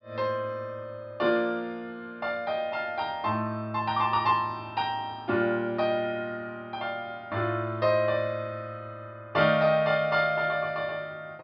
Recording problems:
low-pass filter; nothing above 5.5 kHz

